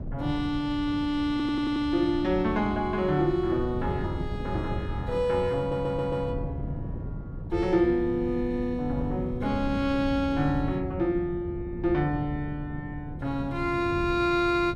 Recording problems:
wind on the microphone; below 190 Hz, SNR 9 dB
stutter; at 1.5 s and at 5.5 s

